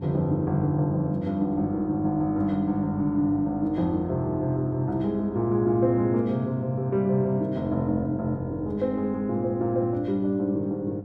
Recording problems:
mains hum; 50 Hz, harmonics up to 700 Hz, SNR 15 dB

